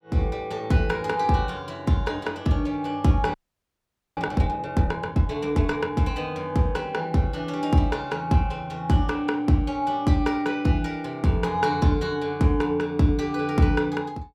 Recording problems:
frozen audio; at 3.5 s for 1 s

